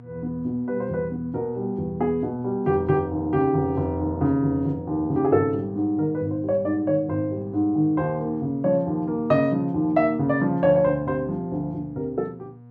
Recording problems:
electrical hum; 60 Hz, harmonics up to 960 Hz, SNR 22 dB

